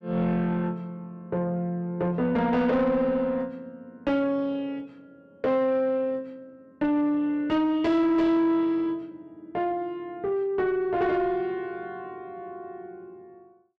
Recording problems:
distorted audio; soft clipping, signal-to-distortion ratio 11 dB

